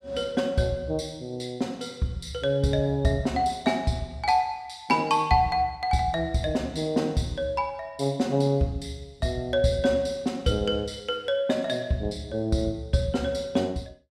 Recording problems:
none

